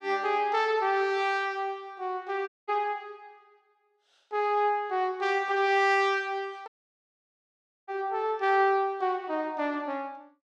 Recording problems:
audio cutting out; at 2.5 s and at 6.5 s for 1 s

